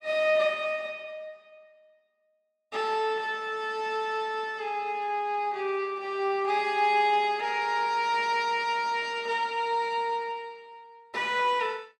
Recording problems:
none

